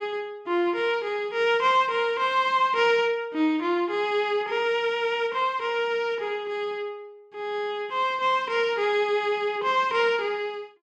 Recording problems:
none

